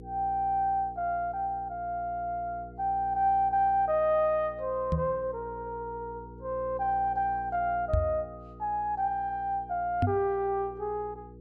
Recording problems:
electrical hum; 60 Hz, harmonics up to 480 Hz, SNR 18 dB
microphone thump; at 5 s, at 8 s and at 10 s; peak +5 dB vs average level

